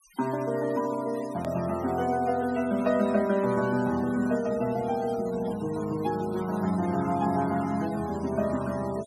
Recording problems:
noise reduction artefacts; signal-to-artefact ratio 18 dB
hard cut with a click; at 1.5 s

